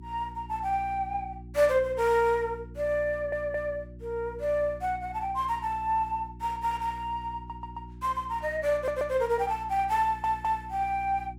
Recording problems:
hum; 60 Hz, harmonics up to 360 Hz, SNR 16 dB
audio stuttering; 4 times, first at 3 s

